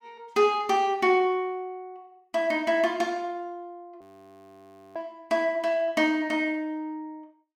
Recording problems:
audio freezing; at 4 s for 1 s

